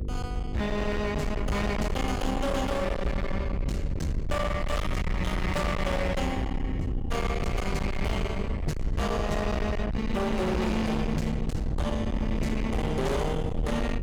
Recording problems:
distorted audio; hard clipping, signal-to-distortion ratio 6 dB
mains hum; 50 Hz, harmonics up to 500 Hz, SNR 10 dB
rumble; below 180 Hz, SNR 3 dB

